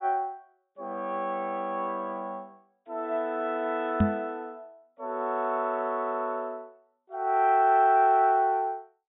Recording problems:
low-pass filter; nothing above 4 kHz
microphone bump; at 4 s; peak +7 dB vs average level

